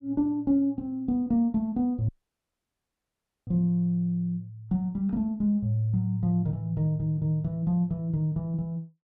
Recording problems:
dropout; at 2 s for 1.5 s

